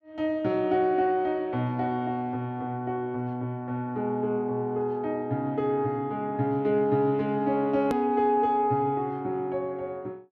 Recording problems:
edit click; at 8 s

